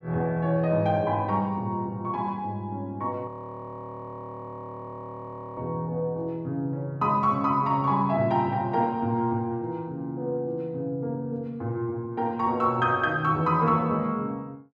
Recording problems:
frozen audio; at 3.5 s for 2.5 s

